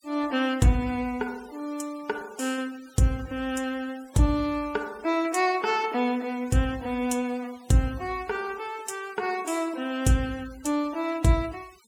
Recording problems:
denoising artefacts; signal-to-artefact ratio 22 dB

